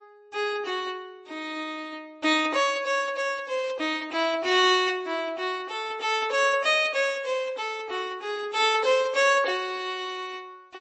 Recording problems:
lossy codec; MP3, then MP3, log-spectral distance 2 dB, nothing above 7.3 kHz

